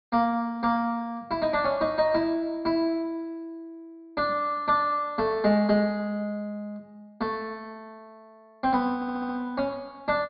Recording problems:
treble cut off; nothing above 4.8 kHz
audio stuttering; at 9 s

